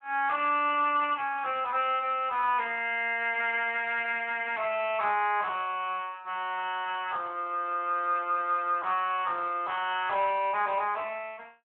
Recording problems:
telephone audio; 260 Hz to 3.5 kHz, Speex

